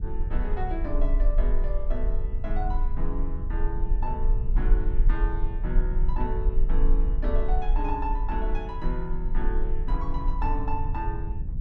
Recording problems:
rumble; below 36 Hz, strongest tone 24 Hz, SNR -5 dB
wind noise; below 96 Hz, SNR 1 dB

